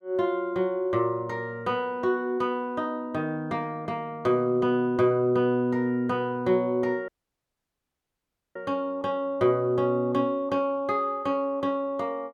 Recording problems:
audio cutting out; at 7 s for 1.5 s

